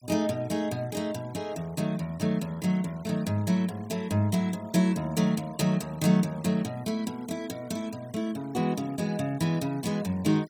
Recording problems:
noise reduction artefacts; signal-to-artefact ratio 23 dB

